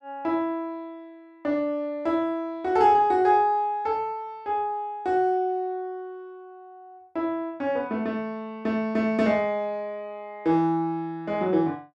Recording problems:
none

